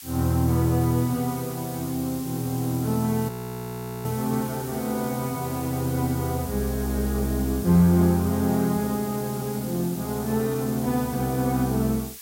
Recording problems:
hiss; slope +5 dB per octave, SNR 13 dB
frozen audio; at 3.5 s for 1 s

